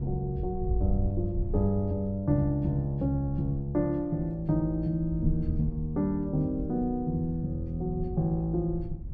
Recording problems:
low-frequency rumble; below 82 Hz, SNR 9 dB

